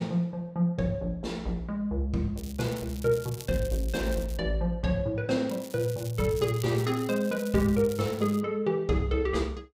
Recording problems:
crackling; from 2.5 to 4.5 s and from 5.5 to 8.5 s; loose cable, SNR 17 dB

